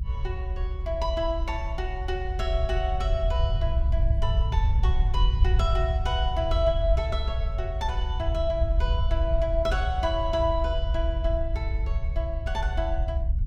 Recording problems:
low-frequency rumble; below 66 Hz, SNR -3 dB

